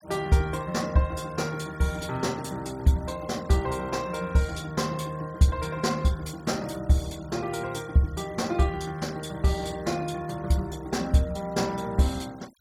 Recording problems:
denoising artefacts; signal-to-artefact ratio 22 dB

